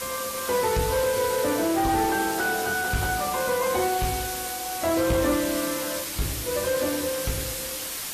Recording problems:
codec artefacts; AAC, log-spectral distance 13 dB, nothing above 14.1 kHz
distortion; soft clipping, signal-to-distortion ratio 11 dB
hiss; SNR 5 dB

